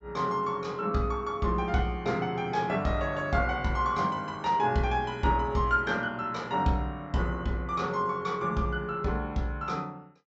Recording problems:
treble cut off; nothing above 7.7 kHz

